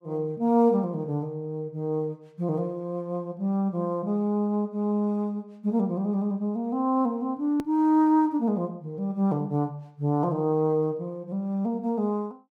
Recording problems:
edit click; at 7.5 s

